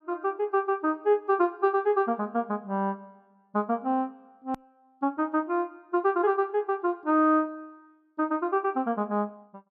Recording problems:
hard cut with a click; at 4.5 s

